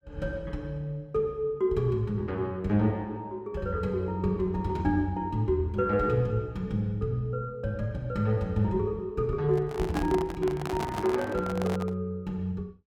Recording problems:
handling noise; from 9.5 to 12 s; peak -1 dB vs average level

